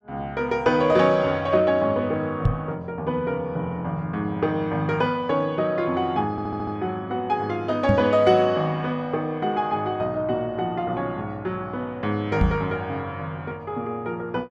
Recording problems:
microphone thump; at 2.5 s, at 8 s and at 12 s; peak +7 dB vs average level
audio stuttering; at 6.5 s

